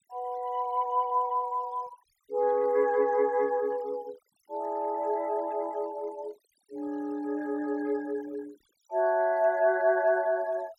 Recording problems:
noise reduction artefacts; signal-to-artefact ratio 25 dB

